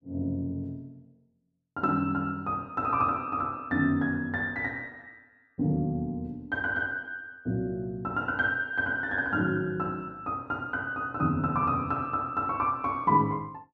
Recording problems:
none

